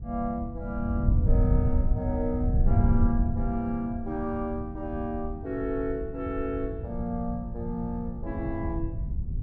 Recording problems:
wind noise; below 100 Hz, SNR -1 dB

